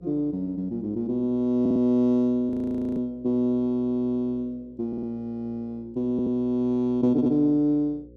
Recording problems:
hum; 60 Hz, harmonics up to 540 Hz, SNR 27 dB
stutter; 4 times, first at 1.5 s
frozen audio; at 2.5 s

